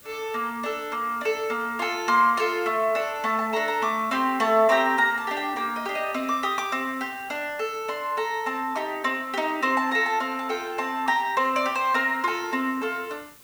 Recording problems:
hiss; SNR 24 dB

